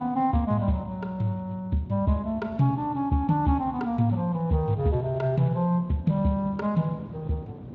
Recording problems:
lossy compression; Speex, log-spectral distance 2 dB
electrical hum; 60 Hz, harmonics up to 720 Hz, SNR 23 dB
wind noise; below 350 Hz, SNR 21 dB

